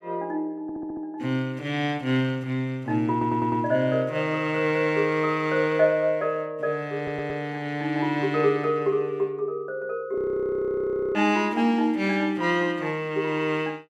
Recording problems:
stutter; at 0.5 s, at 3 s and at 7 s
frozen audio; at 10 s for 1 s

